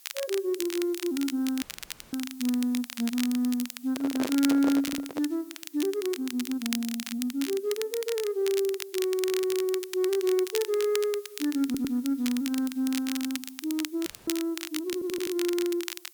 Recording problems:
background hiss; slope +3 dB per octave, SNR 23 dB
crackle; vinyl, SNR 9 dB
dropout; at 1.5 s for 0.5 s and at 14 s
microphone handling noise; from 4 to 5 s; peak +2 dB vs average level
stutter; 4 times, first at 5 s

